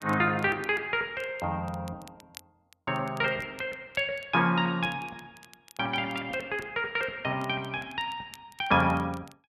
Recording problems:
crackle; vinyl, SNR 25 dB

